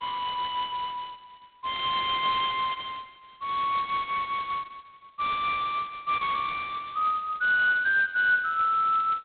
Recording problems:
phone line; 990 Hz to 2.2 kHz, G.726

